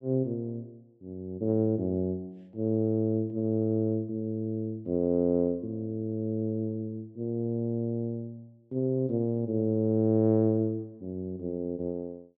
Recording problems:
none

